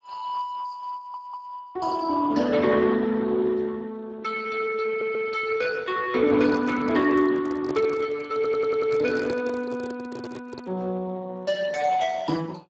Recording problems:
codec artefacts; Speex, log-spectral distance 4 dB, nothing above 7.3 kHz
stutter; at 1 s, at 5 s and at 8.5 s
handling noise; from 6 to 11 s; peak -4 dB vs average level

